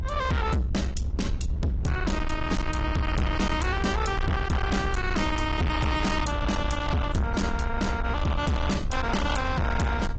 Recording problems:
treble cut off; nothing above 7.8 kHz
lossy compression; AAC, log-spectral distance 3 dB
distortion; soft clipping, signal-to-distortion ratio 7 dB
low-frequency rumble; below 130 Hz, SNR 3 dB

